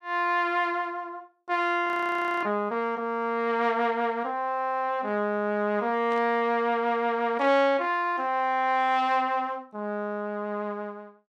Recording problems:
audio freezing; at 2 s for 0.5 s
burst of static; at 6 s; peak -14 dB vs average level

